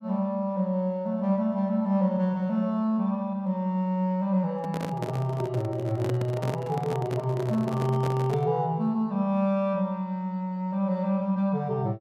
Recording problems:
microphone handling noise; from 4.5 to 8.5 s; peak -3 dB vs average level

